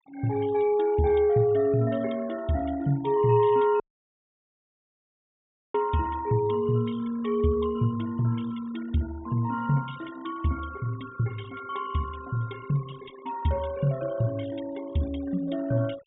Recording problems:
treble cut off; nothing above 4 kHz
noise reduction artefacts; signal-to-artefact ratio 21 dB
audio cutting out; at 4 s for 2 s

